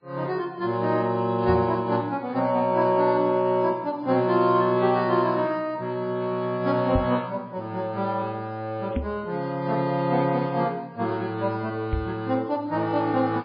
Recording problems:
lossy compression; AAC, then MP3, log-spectral distance 2 dB, nothing above 4.2 kHz
microphone bump; 4 times, first at 1.5 s; peak +2 dB vs average level

